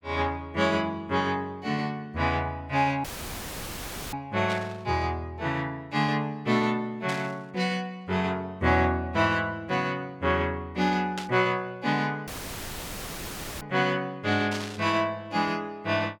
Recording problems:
audio cutting out; at 3 s for 1 s and at 12 s for 1.5 s; filled with static
static burst; 4 times, first at 4.5 s; peak -3 dB vs average level

